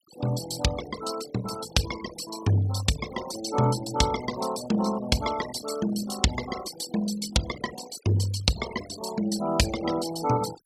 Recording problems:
denoising artefacts; signal-to-artefact ratio 10 dB

